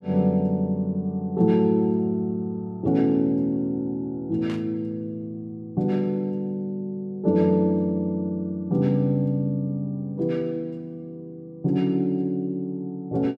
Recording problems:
burst of static; at 4.5 s; peak -11 dB vs average level

